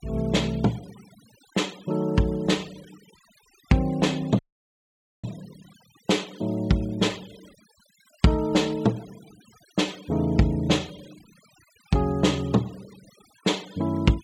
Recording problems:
denoising artefacts; signal-to-artefact ratio 24 dB
dropout; at 4.5 s for 1 s

